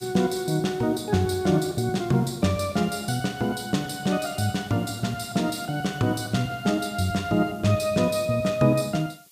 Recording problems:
hiss; slope +4 dB per octave, SNR 27 dB

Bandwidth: 15 kHz